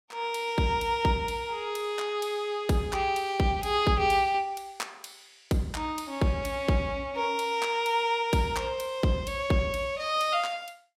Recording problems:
none

